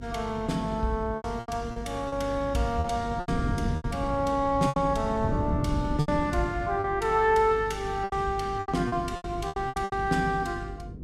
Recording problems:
hum; 50 Hz, harmonics up to 500 Hz, SNR 13 dB
wind noise; below 190 Hz, SNR 9 dB
packet loss; 11% of the sound replaced, filled with repeated pitch periods

